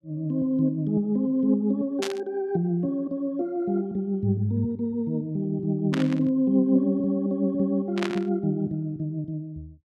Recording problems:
static burst; at 2 s, at 6 s and at 8 s; peak -1 dB vs average level

